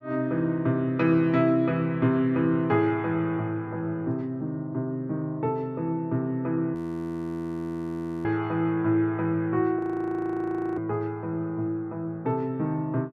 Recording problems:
audio freezing; at 7 s for 1.5 s and at 10 s for 1 s

